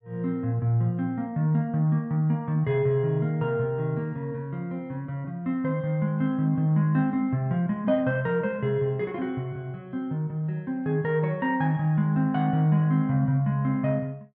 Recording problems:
none

